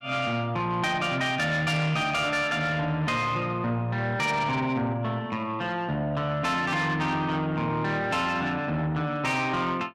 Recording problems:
distorted audio; soft clipping, signal-to-distortion ratio 11 dB

